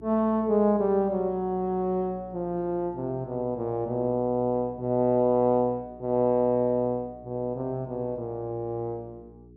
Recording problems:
hum; 60 Hz, harmonics up to 420 Hz, SNR 23 dB

